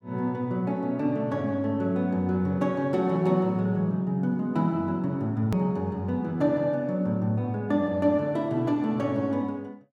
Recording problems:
hard cut with a click; at 5.5 s

